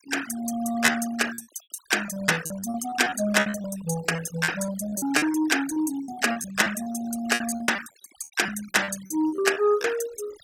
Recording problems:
noise reduction artefacts; signal-to-artefact ratio 15 dB
packet loss; 16% of the sound replaced, filled with repeated pitch periods

